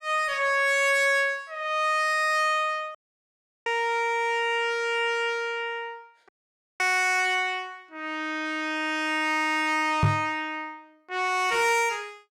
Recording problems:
distorted audio; soft clipping, signal-to-distortion ratio 11 dB
audio cutting out; at 3 s for 0.5 s and at 6.5 s for 0.5 s
knock on the microphone; at 10 s; peak +6 dB vs average level

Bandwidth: 17.5 kHz